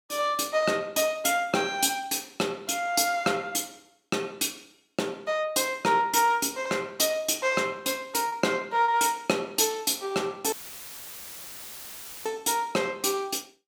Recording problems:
lost packets; 0.7% of the sound replaced, filled with repeated pitch periods
audio cutting out; at 11 s for 1.5 s; filled with static

